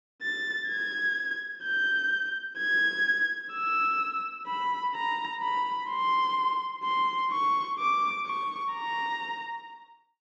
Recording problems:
none

